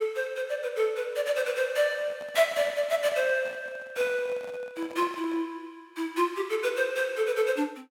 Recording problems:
handling noise; from 2 to 5.5 s; peak -11 dB vs average level

